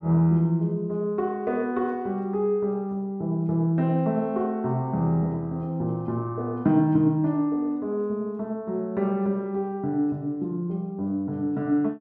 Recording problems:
none

